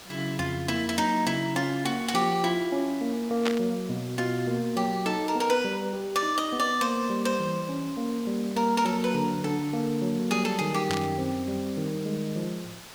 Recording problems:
background hiss; slope -1 dB per octave, SNR 17 dB
static burst; at 3.5 s and at 11 s; peak +2 dB vs average level

